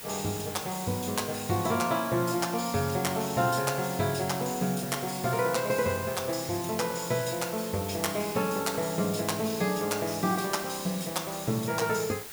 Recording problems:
background hiss; slope -1 dB per octave, SNR 10 dB

